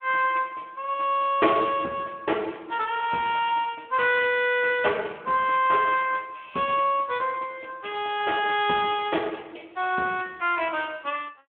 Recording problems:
telephone audio; 260 Hz to 3.4 kHz, Speex

